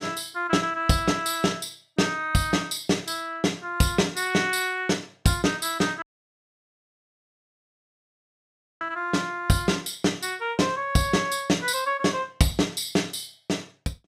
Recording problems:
audio cutting out; at 6 s for 3 s

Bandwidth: 15.5 kHz